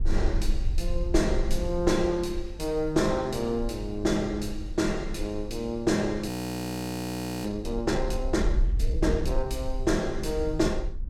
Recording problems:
rumble; below 54 Hz, SNR 6 dB
audio freezing; at 6.5 s for 1 s

